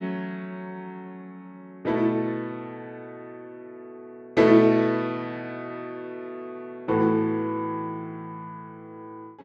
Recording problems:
none

